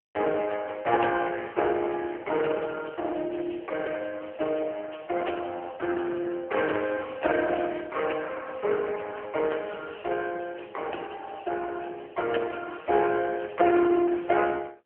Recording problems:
phone line; 280 Hz to 3.1 kHz, AMR-NB

